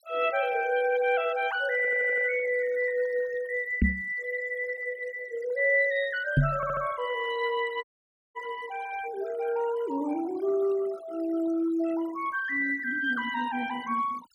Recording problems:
noise reduction artefacts; signal-to-artefact ratio 18 dB
audio stuttering; at 2 s and at 6.5 s
microphone bump; at 4 s and at 6.5 s; peak +9 dB vs average level
dropout; at 8 s for 0.5 s

